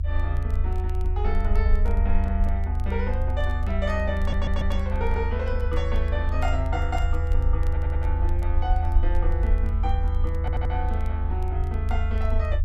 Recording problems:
low-frequency rumble; below 78 Hz, strongest tone 24 Hz, SNR -6 dB
crackle; vinyl, SNR 26 dB
audio stuttering; at 4 s, at 7.5 s and at 10 s

